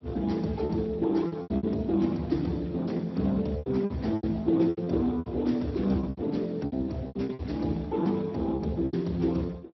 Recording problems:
low-pass filter; nothing above 5.7 kHz
lossy codec; Speex, log-spectral distance 3 dB
lost packets; 13% of the sound replaced, filled with repeated pitch periods

